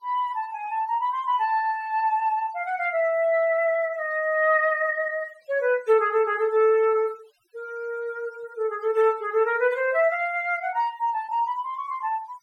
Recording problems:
noise reduction artefacts; signal-to-artefact ratio 26 dB

